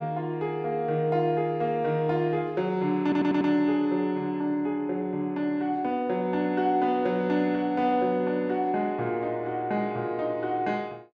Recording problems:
audio stuttering; at 3 s

